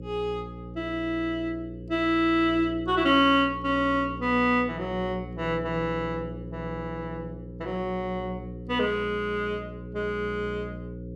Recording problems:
electrical hum; 60 Hz, harmonics up to 540 Hz, SNR 12 dB

